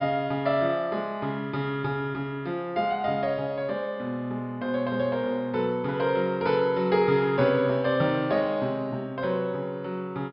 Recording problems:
treble cut off; nothing above 5.5 kHz

